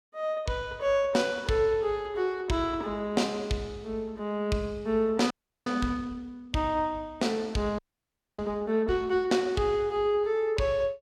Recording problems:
audio freezing; at 5.5 s and at 8 s for 0.5 s

